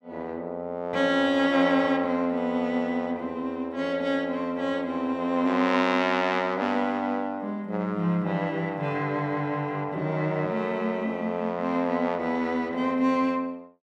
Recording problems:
none

